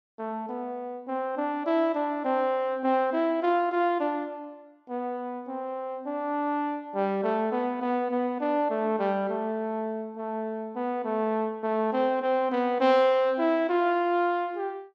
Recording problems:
none

